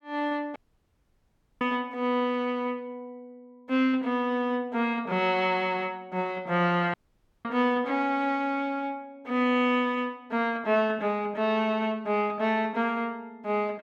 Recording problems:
audio cutting out; at 0.5 s for 1 s and at 7 s for 0.5 s

